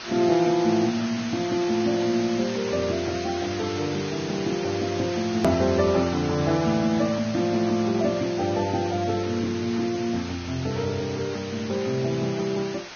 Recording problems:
codec artefacts; Vorbis, log-spectral distance 8 dB, nothing above 13.1 kHz
background hiss; slope 0 dB per octave, SNR 11 dB
edit click; at 5.5 s

